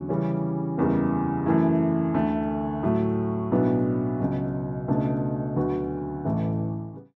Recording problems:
none

